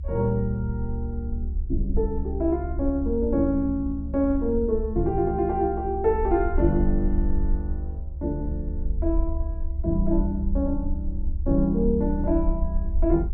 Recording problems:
low-frequency rumble; below 68 Hz, SNR 4 dB

